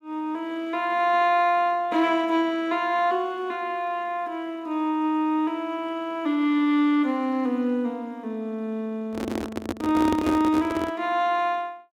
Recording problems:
microphone handling noise; from 9 to 11 s; peak +3 dB vs average level

